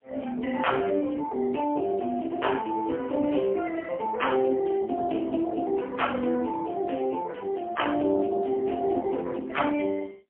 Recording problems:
telephone audio; 220 Hz to 3.2 kHz, AMR-NB, then MP3
crackle; from 1.5 to 3.5 s; loose cable, SNR 29 dB

